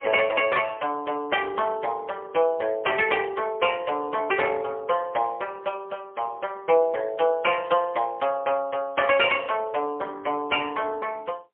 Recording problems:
phone line; 320 Hz to 3.4 kHz, AMR-NB, then MP3

